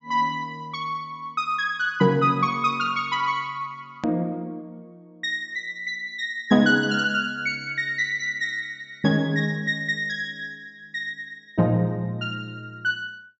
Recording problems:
treble cut off; nothing above 8 kHz
click at an edit; at 4 s

